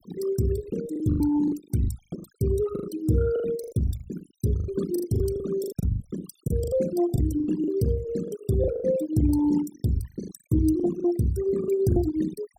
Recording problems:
noise reduction artefacts; signal-to-artefact ratio 14 dB
lost packets; 16% of the sound replaced, filled with the last packet

